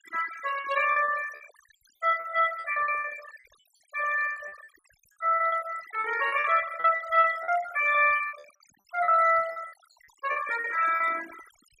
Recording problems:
denoising artefacts; signal-to-artefact ratio 14 dB
lost packets; 13% of the sound replaced, filled with repeated pitch periods

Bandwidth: 15 kHz